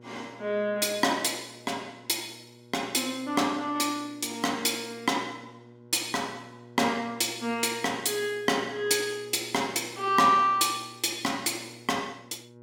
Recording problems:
electrical hum; 60 Hz, harmonics up to 1.4 kHz, SNR 23 dB

